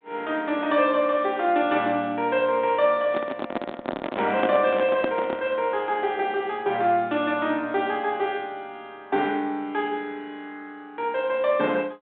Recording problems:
phone line; 150 Hz to 3.7 kHz, G.726
handling noise; from 3 to 5.5 s; peak +2 dB vs average level

